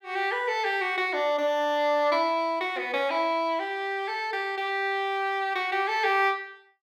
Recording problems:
none

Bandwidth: 17 kHz